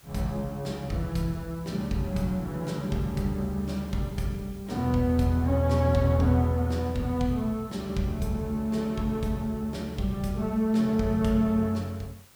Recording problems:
hiss; slope -1 dB per octave, SNR 26 dB

